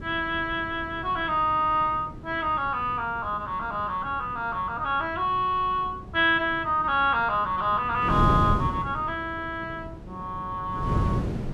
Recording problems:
wind on the microphone; below 260 Hz, SNR 9 dB

